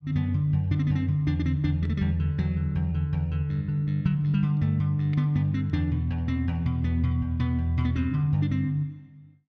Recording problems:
none

